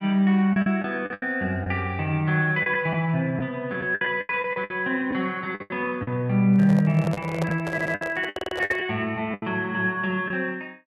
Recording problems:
lost packets; 10% of the sound replaced, filled with the last packet
microphone handling noise; from 6.5 to 9 s; peak -1 dB vs average level
stutter; at 7.5 s and at 8.5 s

